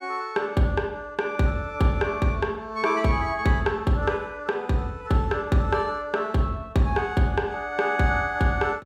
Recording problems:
none

